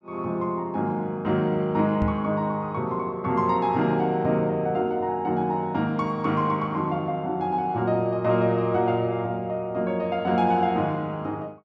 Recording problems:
microphone thump; at 2 s; peak 0 dB vs average level

